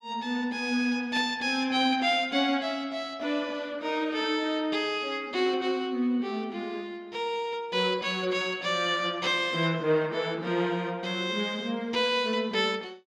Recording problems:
none

